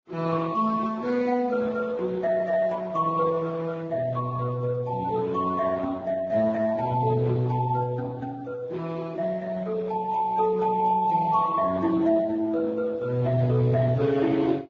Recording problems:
lossy compression; Speex, then Vorbis, log-spectral distance 3 dB

